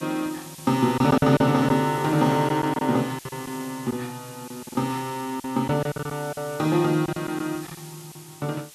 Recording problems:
hiss; slope +2 dB per octave, SNR 18 dB
lost packets; 9% of the sound replaced, filled with silence

